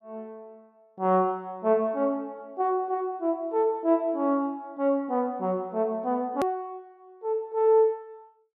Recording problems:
hard cut with a click; at 6.5 s

